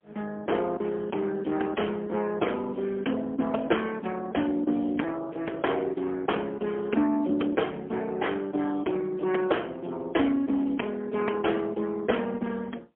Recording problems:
telephone audio; 240 Hz to 3.3 kHz, AMR-NB, then MP3

